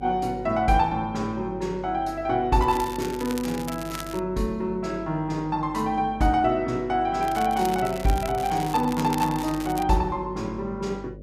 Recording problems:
electrical hum; 50 Hz, harmonics up to 600 Hz, SNR 16 dB
crackle; from 2.5 to 4 s and from 7 to 10 s; loose cable, SNR 14 dB

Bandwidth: 14.5 kHz